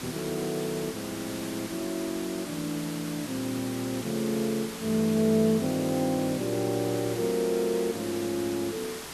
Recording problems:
hiss; slope -2 dB per octave, SNR 9 dB

